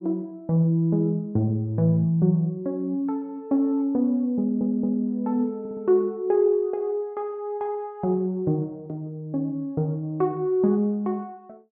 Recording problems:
stutter; at 4.5 s and at 5.5 s

